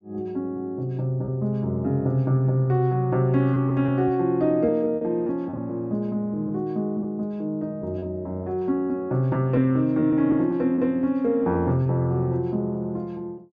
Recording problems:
packet loss; 3% of the sound replaced, filled with repeated pitch periods

